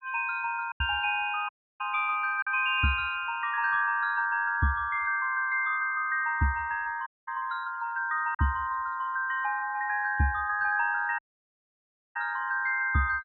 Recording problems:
low-pass filter; nothing above 4.2 kHz
denoising artefacts; signal-to-artefact ratio 23 dB
lost packets; 1.4% of the sound replaced, filled with silence
dropout; at 1.5 s, at 7 s and at 11 s for 1 s

